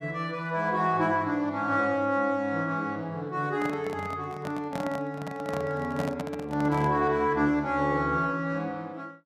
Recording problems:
microphone handling noise; from 3.5 to 7 s; peak -2 dB vs average level

